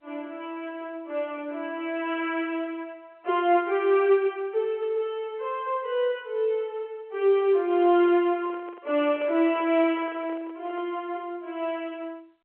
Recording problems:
phone line; 300 Hz to 3.5 kHz, G.711
microphone handling noise; from 7.5 to 11 s; peak -13 dB vs average level

